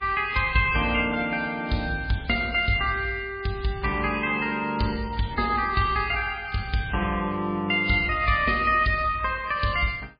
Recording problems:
lossy compression; MP3, log-spectral distance 4 dB, nothing above 4.6 kHz

